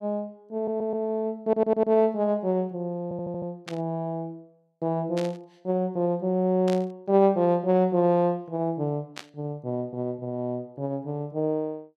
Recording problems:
audio stuttering; at 0.5 s, at 1.5 s and at 3 s
burst of static; 4 times, first at 3.5 s; peak -6 dB vs average level

